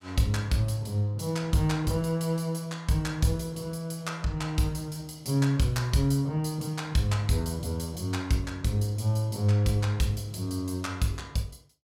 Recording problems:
none

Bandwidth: 16 kHz